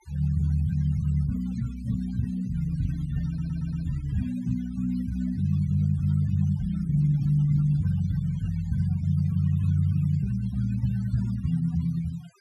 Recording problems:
denoising artefacts; signal-to-artefact ratio 22 dB
audio stuttering; at 3.5 s

